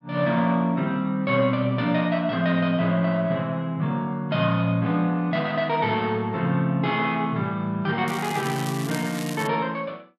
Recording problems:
crackle; from 8 to 9.5 s; loose cable, SNR 13 dB

